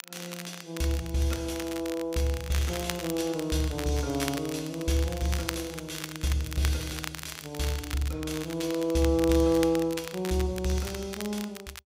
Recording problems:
crackle; vinyl, SNR 10 dB

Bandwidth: 15.5 kHz